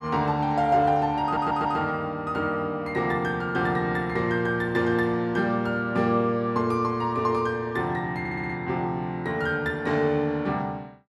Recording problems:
stutter; at 1 s and at 8 s

